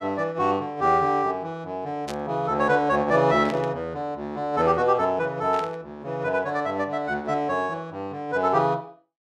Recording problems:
static burst; at 2 s, at 3.5 s and at 5.5 s; peak -7 dB vs average level

